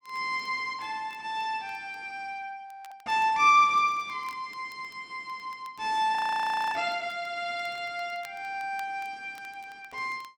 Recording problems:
crackle; vinyl, SNR 29 dB
audio freezing; at 2.5 s and at 6 s for 0.5 s

